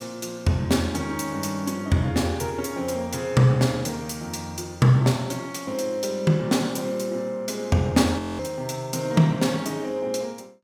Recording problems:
audio freezing; at 8 s

